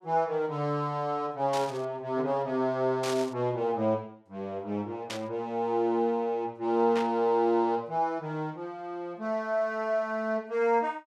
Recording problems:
static burst; 4 times, first at 1.5 s; peak -3 dB vs average level

